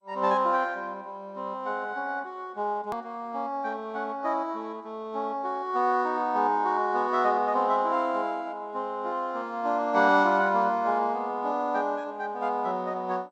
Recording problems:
lossy compression; MP2, log-spectral distance 2 dB
click at an edit; at 3 s

